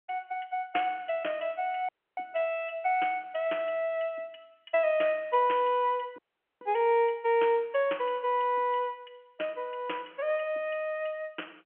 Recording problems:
phone line; 280 Hz to 3.2 kHz, G.711
audio cutting out; at 2 s and at 6 s

